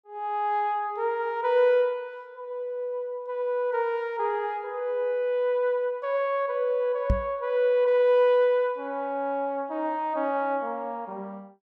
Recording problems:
knock on the microphone; at 7 s; peak +5 dB vs average level

